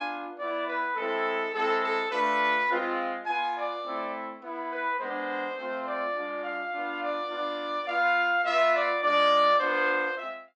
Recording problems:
none

